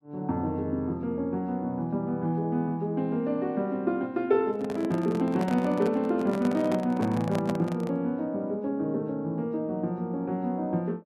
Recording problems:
handling noise; from 4.5 to 8 s; peak -1 dB vs average level

